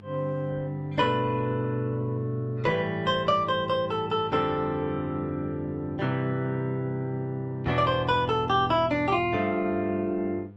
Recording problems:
lossy compression; Opus, log-spectral distance 2 dB
mains hum; 50 Hz, harmonics up to 1 kHz, SNR 19 dB

